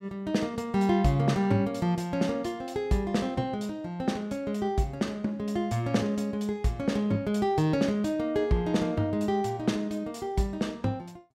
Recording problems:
none

